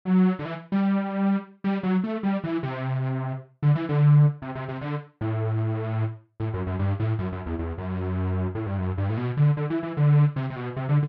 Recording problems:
none

